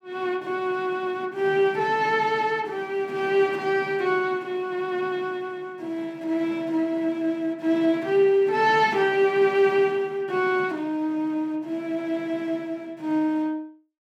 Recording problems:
none

